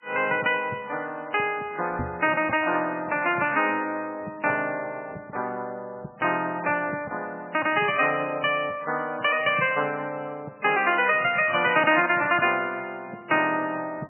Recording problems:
lossy compression; MP3, log-spectral distance 3 dB, nothing above 2.5 kHz
microphone bump; at 2 s; peak -3 dB vs average level

